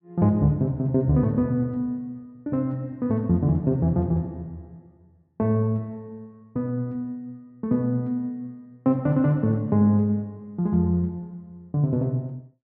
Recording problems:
none

